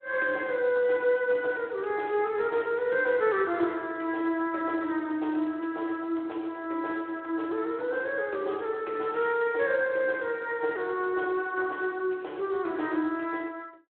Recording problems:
phone line; 260 Hz to 3.5 kHz, Speex

